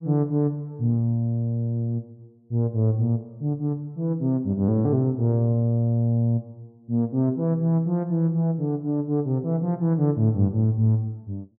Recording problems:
none

